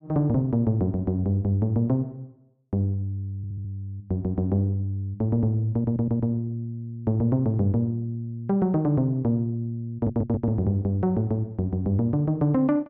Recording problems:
audio stuttering; at 3.5 s, at 5.5 s and at 10 s

